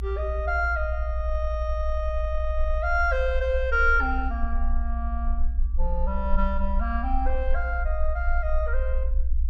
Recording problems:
rumble; below 58 Hz, SNR 0 dB

